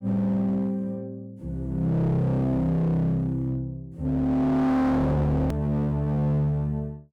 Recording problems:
distortion; hard clipping, uneven, signal-to-distortion ratio 8 dB
click at an edit; at 5.5 s

